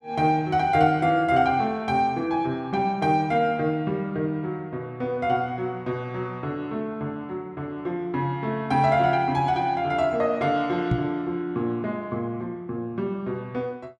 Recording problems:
microphone thump; at 11 s; peak +4 dB vs average level

